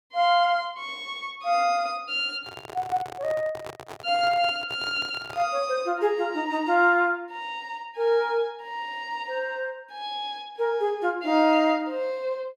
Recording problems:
handling noise; from 2.5 to 5.5 s; peak -9 dB vs average level

